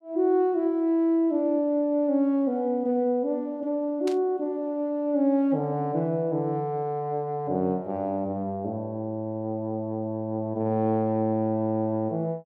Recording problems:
static burst; at 4 s; peak -9 dB vs average level

